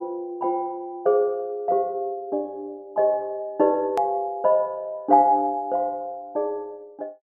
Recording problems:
edit click; at 4 s

